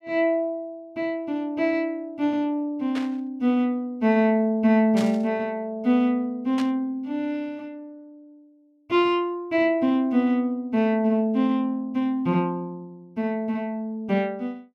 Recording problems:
static burst; at 3 s, at 5 s and at 6.5 s; peak -7 dB vs average level

